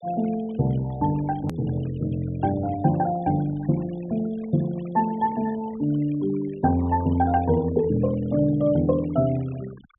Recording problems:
treble missing; nothing above 3.5 kHz
noise reduction artefacts; signal-to-artefact ratio 22 dB
edit click; at 1.5 s

